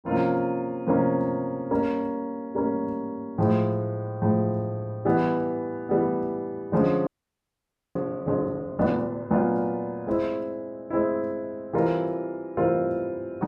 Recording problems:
frozen audio; at 7 s for 1 s

